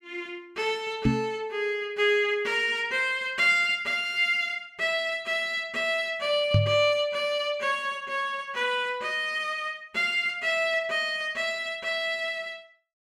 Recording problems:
microphone thump; at 1 s and at 6.5 s; peak +7 dB vs average level

